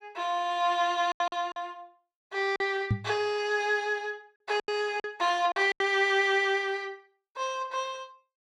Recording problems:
packet loss; 6% of the sound replaced, filled with silence
knock on the microphone; at 3 s; peak +4 dB vs average level

